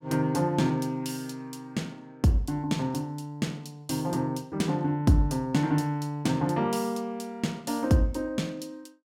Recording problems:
none

